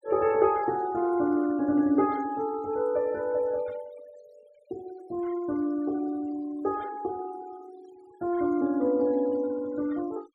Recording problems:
noise reduction artefacts; signal-to-artefact ratio 24 dB

